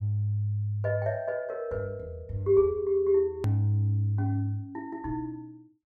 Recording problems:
hard cut with a click; at 3.5 s

